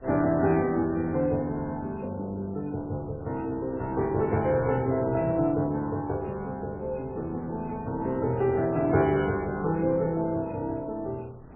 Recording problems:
lossy codec; MP3, log-spectral distance 2 dB, nothing above 3 kHz
wind on the microphone; below 470 Hz, SNR 20 dB

